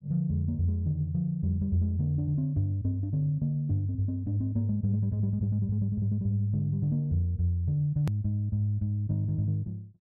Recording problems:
hard cut with a click; at 8 s

